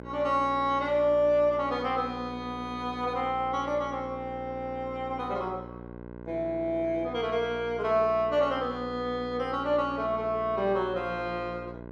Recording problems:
hum; 60 Hz, harmonics up to 2 kHz, SNR 14 dB

